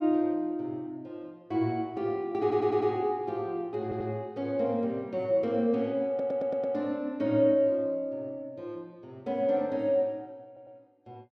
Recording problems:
audio stuttering; 4 times, first at 2.5 s

